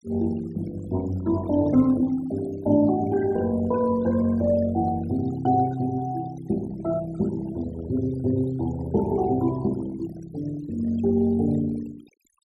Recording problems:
noise reduction artefacts; signal-to-artefact ratio 18 dB

